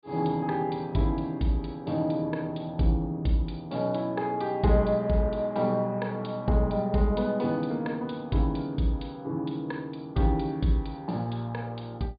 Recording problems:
treble cut off; nothing above 4.7 kHz

